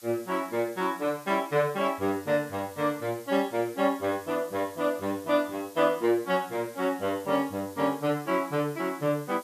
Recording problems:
hiss; slope +1 dB per octave, SNR 21 dB

